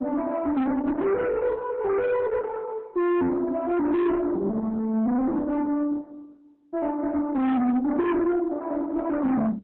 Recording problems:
lossy codec; MP3, then Opus, log-spectral distance 2 dB
distortion; soft clipping, signal-to-distortion ratio 6 dB

